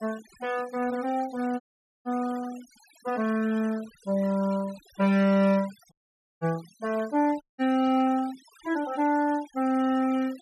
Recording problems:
denoising artefacts; signal-to-artefact ratio 21 dB
dropout; at 1.5 s, at 6 s and at 7.5 s

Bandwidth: 13 kHz